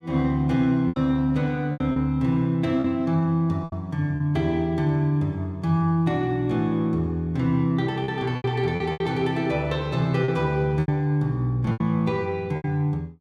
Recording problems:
lost packets; 7% of the sound replaced, filled with repeated pitch periods

